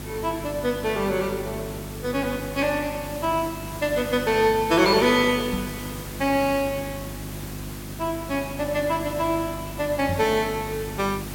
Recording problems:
electrical hum; 50 Hz, harmonics up to 350 Hz, SNR 13 dB
background hiss; slope -3 dB per octave, SNR 13 dB
microphone thump; at 5.5 s and at 10 s; peak 0 dB vs average level

